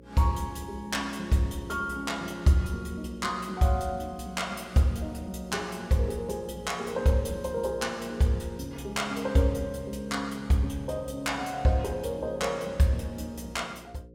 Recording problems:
mains hum; 60 Hz, harmonics up to 540 Hz, SNR 21 dB

